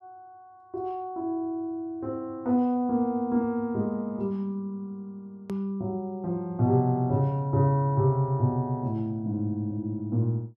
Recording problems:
hard cut with a click; at 5.5 s

